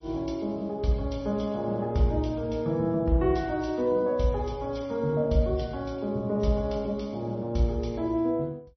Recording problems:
lossy codec; MP3, log-spectral distance 2 dB, nothing above 5.8 kHz

